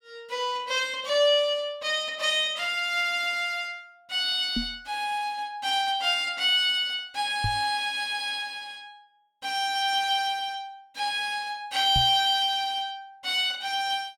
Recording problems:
knock on the microphone; at 4.5 s, at 7.5 s and at 12 s; peak -1 dB vs average level

